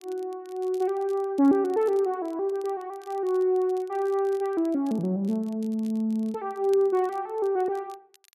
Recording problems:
crackle; vinyl, SNR 29 dB

